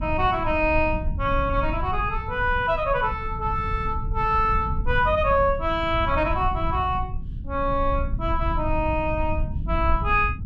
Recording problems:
rumble; below 90 Hz, SNR 6 dB

